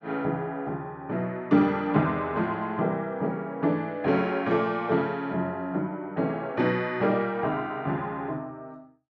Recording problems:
none

